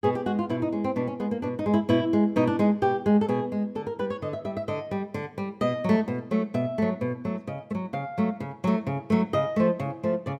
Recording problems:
none

